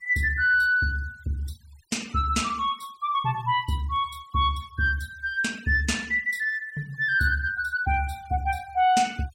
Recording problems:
noise reduction artefacts; signal-to-artefact ratio 24 dB

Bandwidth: 16 kHz